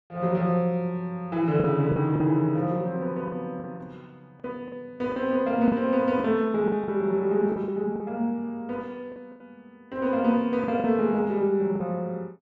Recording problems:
lost packets; 7% of the sound replaced, filled with the last packet

